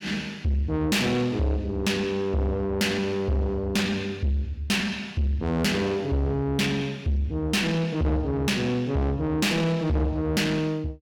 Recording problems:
distortion; soft clipping, signal-to-distortion ratio 7 dB

